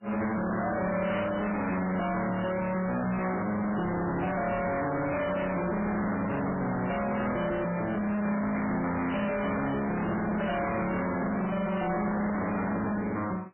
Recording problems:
lossy compression; MP3, log-spectral distance 5 dB, nothing above 2.5 kHz
distortion; hard clipping, uneven, signal-to-distortion ratio 5 dB

